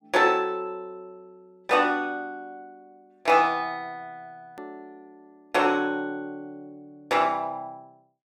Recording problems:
edit click; at 4.5 s

